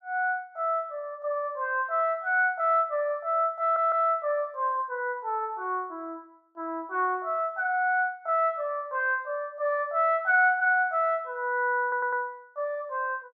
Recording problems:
stutter; at 3.5 s and at 12 s

